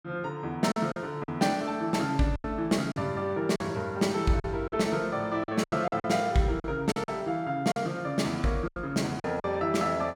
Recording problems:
packet loss; 9% of the sound replaced, filled with silence

